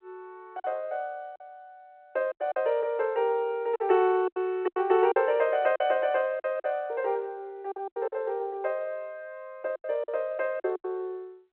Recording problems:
phone line; 300 Hz to 3.1 kHz, G.711
lost packets; 9% of the sound replaced, filled with silence

